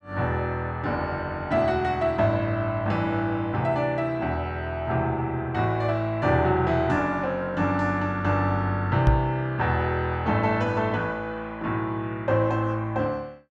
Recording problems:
microphone bump; at 9 s; peak +7 dB vs average level

